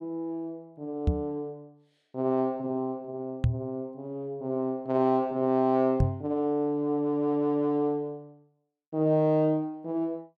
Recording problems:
microphone thump; at 1 s, at 3.5 s and at 6 s; peak +7 dB vs average level

